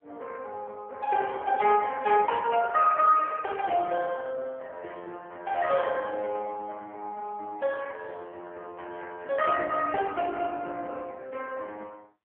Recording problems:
telephone audio; 370 Hz to 3.2 kHz, AMR-NB

